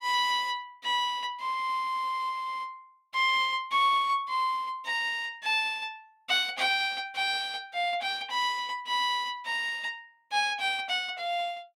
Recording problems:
none

